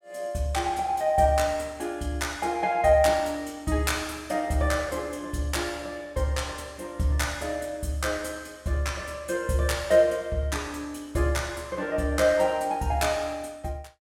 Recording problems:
none

